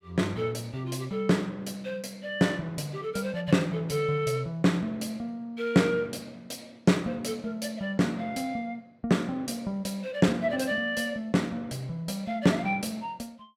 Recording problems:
none

